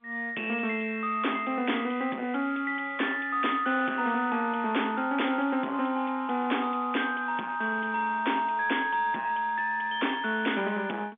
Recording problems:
phone line; 170 Hz to 3.6 kHz, G.711
distortion; soft clipping, signal-to-distortion ratio 12 dB

